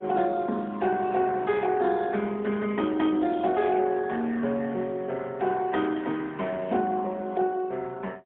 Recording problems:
phone line; 150 Hz to 3.8 kHz, AMR-NB, then MP3

